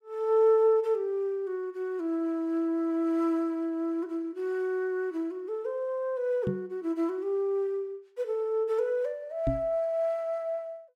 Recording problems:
knock on the microphone; at 6.5 s and at 9.5 s; peak +2 dB vs average level

